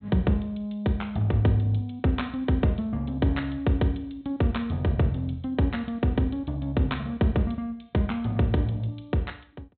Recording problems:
low-pass filter; nothing above 4 kHz

